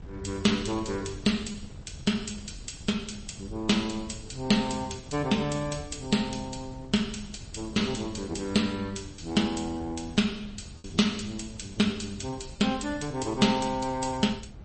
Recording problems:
lossy compression; MP3, log-spectral distance 6 dB, nothing above 8.2 kHz
wind noise; below 150 Hz, SNR 16 dB
packet loss; 1.4% of the sound replaced, filled with repeated pitch periods

